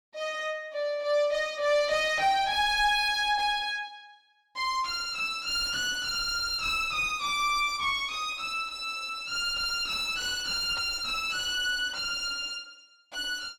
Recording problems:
distorted audio; soft clipping, signal-to-distortion ratio 8 dB

